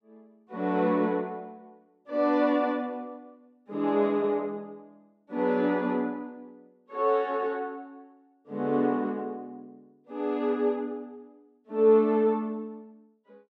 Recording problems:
none

